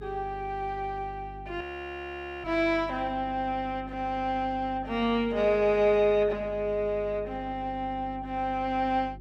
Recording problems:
hum; 50 Hz, harmonics up to 400 Hz, SNR 17 dB
frozen audio; at 1.5 s for 1 s

